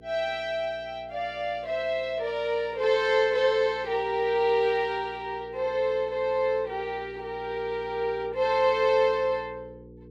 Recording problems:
mains hum; 60 Hz, harmonics up to 480 Hz, SNR 23 dB

